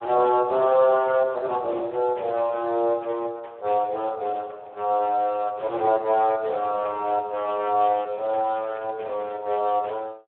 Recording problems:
telephone audio; 320 Hz to 3.4 kHz, Speex

